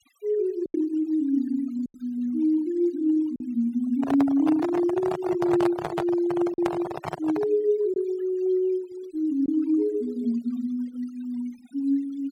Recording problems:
denoising artefacts; signal-to-artefact ratio 20 dB
lost packets; 2% of the sound replaced, filled with silence
handling noise; from 4 to 7.5 s; peak 0 dB vs average level

